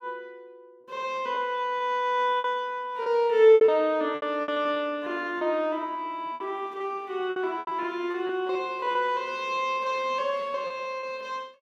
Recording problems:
packet loss; 9% of the sound replaced, filled with repeated pitch periods

